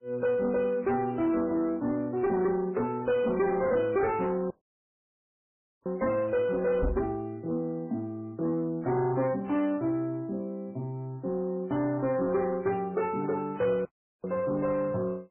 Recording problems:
lossy codec; MP3, then AAC, log-spectral distance 2 dB, nothing above 2.5 kHz
distorted audio; soft clipping, signal-to-distortion ratio 11 dB
audio cutting out; at 4.5 s for 1.5 s and at 14 s
microphone thump; at 7 s; peak +3 dB vs average level

